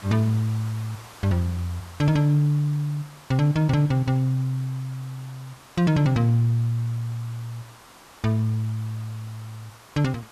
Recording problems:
background hiss; SNR 22 dB

